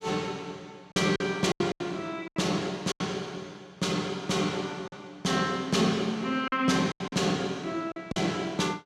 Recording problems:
packet loss; 8% of the sound replaced, filled with silence

